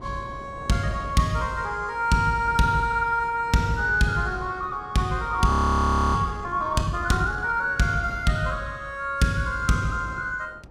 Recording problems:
wind noise; below 500 Hz, SNR 19 dB
audio freezing; at 5.5 s for 0.5 s

